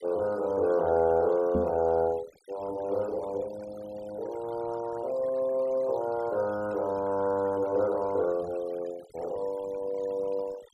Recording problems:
noise reduction artefacts; signal-to-artefact ratio 20 dB
knock on the microphone; at 1.5 s; peak +2 dB vs average level

